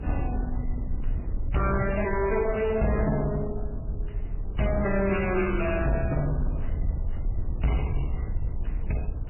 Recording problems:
codec artefacts; MP3, then MP3, log-spectral distance 4 dB, nothing above 2.6 kHz
distorted audio; soft clipping, signal-to-distortion ratio 12 dB
rumble; below 76 Hz, SNR 5 dB

